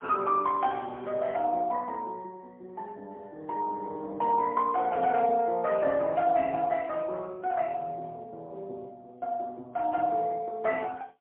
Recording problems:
phone line; 300 Hz to 3.8 kHz, AMR-NB, then MP3

